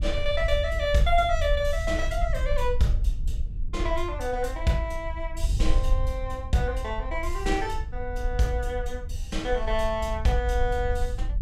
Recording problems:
wind noise; below 56 Hz, SNR 3 dB

